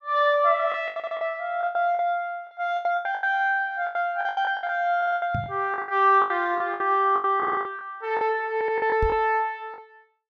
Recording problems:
lost packets; 16% of the sound replaced, filled with the last packet
audio stuttering; 4 times, first at 1 s
knock on the microphone; at 5.5 s and at 9 s; peak -1 dB vs average level

